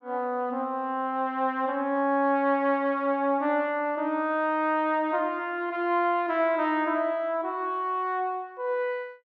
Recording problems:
none

